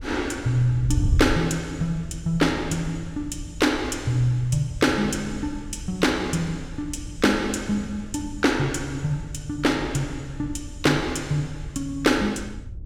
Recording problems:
wind noise; below 98 Hz, SNR 11 dB

